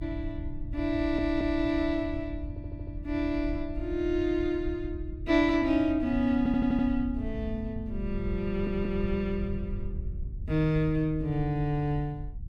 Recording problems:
low-frequency rumble; below 90 Hz, SNR 9 dB
stutter; 4 times, first at 1 s

